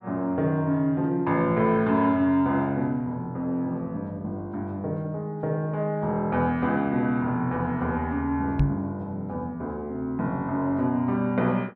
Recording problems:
microphone bump; at 8.5 s; peak +6 dB vs average level

